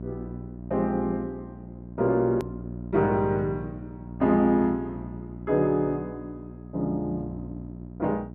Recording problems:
electrical hum; 60 Hz, harmonics up to 720 Hz, SNR 12 dB
hard cut with a click; at 2.5 s

